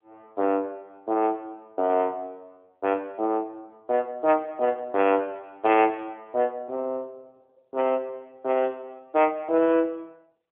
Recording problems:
telephone audio; 240 Hz to 3.3 kHz, AMR-NB

